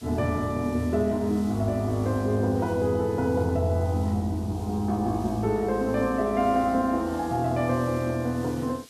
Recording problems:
hiss; SNR 23 dB

